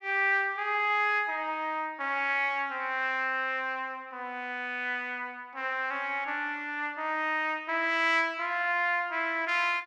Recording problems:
none

